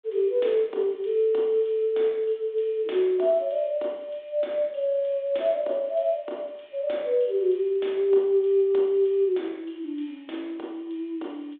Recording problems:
telephone audio; 300 Hz to 3.6 kHz, G.726

